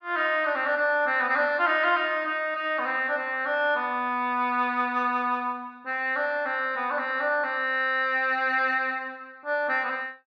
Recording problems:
treble missing; nothing above 8 kHz

